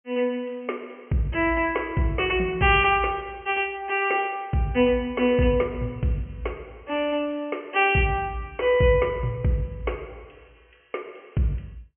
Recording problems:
treble missing; nothing above 3.1 kHz

